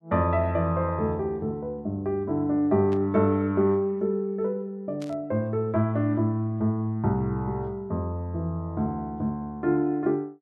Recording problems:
burst of static; at 3 s and at 5 s; peak -15 dB vs average level

